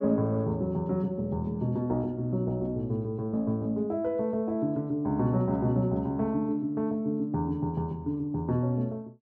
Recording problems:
none

